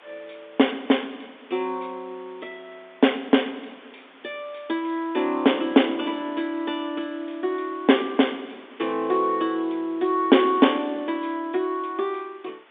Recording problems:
telephone audio; 190 Hz to 3.6 kHz, G.711
hiss; SNR 27 dB

